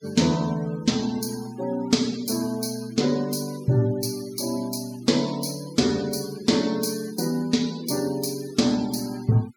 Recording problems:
noise reduction artefacts; signal-to-artefact ratio 18 dB

